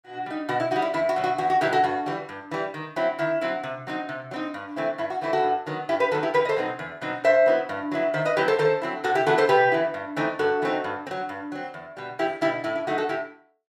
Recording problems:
none

